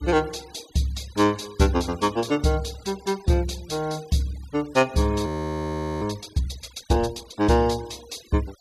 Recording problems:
noise reduction artefacts; signal-to-artefact ratio 21 dB
audio freezing; at 5.5 s for 1 s

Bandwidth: 14.5 kHz